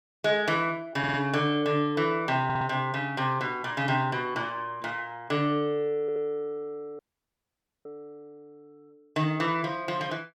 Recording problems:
audio stuttering; at 1 s, at 2.5 s and at 6 s
dropout; at 7 s for 1 s

